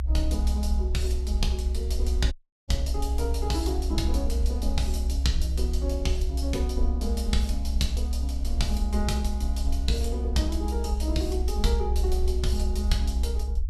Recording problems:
rumble; below 64 Hz, strongest tone 64 Hz, SNR -4 dB
audio cutting out; at 2.5 s

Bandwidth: 15 kHz